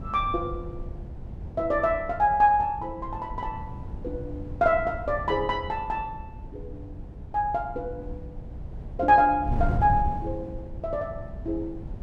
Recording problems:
wind on the microphone; below 130 Hz, SNR 11 dB

